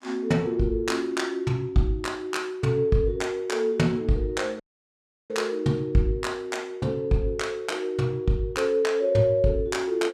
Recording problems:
dropout; at 4.5 s for 0.5 s

